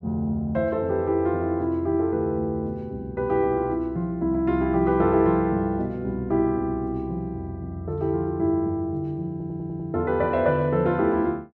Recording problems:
audio stuttering; at 9.5 s

